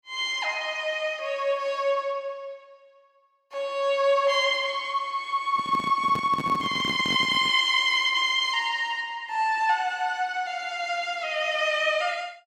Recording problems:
handling noise; from 5.5 to 7.5 s; peak -5 dB vs average level

